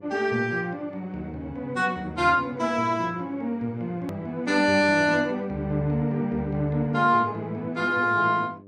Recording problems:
hum; 50 Hz, harmonics up to 700 Hz, SNR 23 dB
edit click; at 4 s

